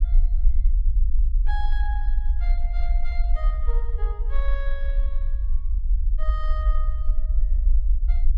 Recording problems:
low-frequency rumble; below 46 Hz, SNR -14 dB

